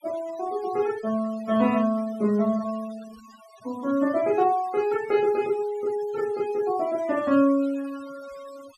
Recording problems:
denoising artefacts; signal-to-artefact ratio 20 dB

